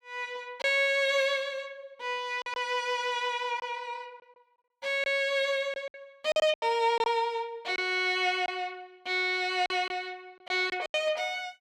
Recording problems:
packet loss; 6% of the sound replaced, filled with silence

